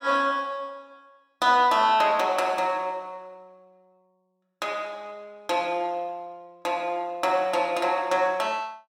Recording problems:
none

